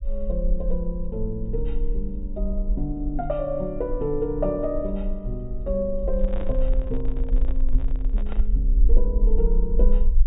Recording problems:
treble cut off; nothing above 4 kHz
rumble; below 42 Hz, strongest tone 20 Hz, SNR -2 dB
handling noise; from 6 to 8.5 s; peak -5 dB vs average level

